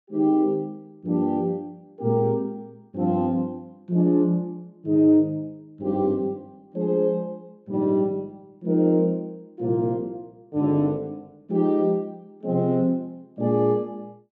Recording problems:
none

